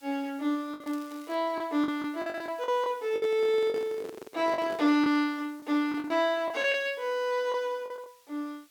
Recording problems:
hiss; slope +2 dB per octave, SNR 29 dB
packet loss; 9% of the sound replaced, filled with the last packet
crackle; at 1 s; loose cable, SNR 26 dB
microphone handling noise; from 3 to 5 s; peak -8 dB vs average level

